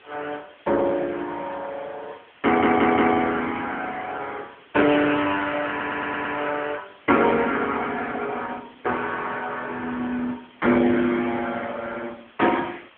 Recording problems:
phone line; 190 Hz to 3.4 kHz, AMR-NB
background hiss; SNR 27 dB
audio stuttering; at 2.5 s and at 5.5 s

